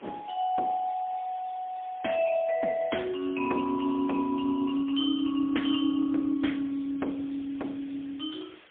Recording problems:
telephone audio; 190 Hz to 3.4 kHz, AMR-NB, then MP3
hiss; SNR 24 dB

